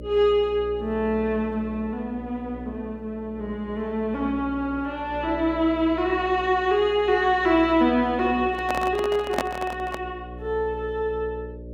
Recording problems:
hum; 60 Hz, harmonics up to 600 Hz, SNR 15 dB
microphone handling noise; from 8.5 to 10 s; peak +3 dB vs average level

